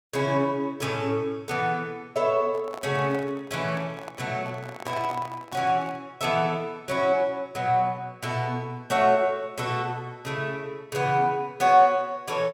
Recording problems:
handling noise; from 2.5 to 6 s; peak -7 dB vs average level

